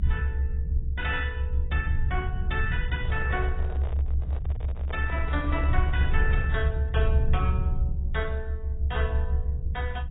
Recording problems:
lossy codec; MP2, then AAC, log-spectral distance 2 dB, nothing above 3.6 kHz
low-frequency rumble; below 74 Hz, SNR -5 dB
microphone handling noise; from 3 to 6.5 s; peak -4 dB vs average level

